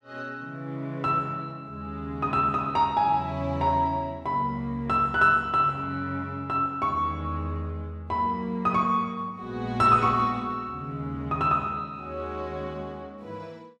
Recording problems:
none

